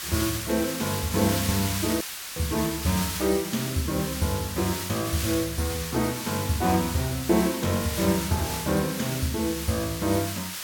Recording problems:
background hiss; slope +3 dB per octave, SNR 5 dB
dropout; at 2 s

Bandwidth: 17 kHz